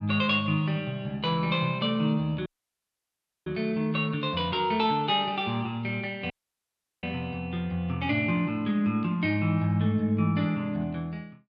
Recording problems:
dropout; at 2.5 s for 1 s and at 6.5 s for 0.5 s

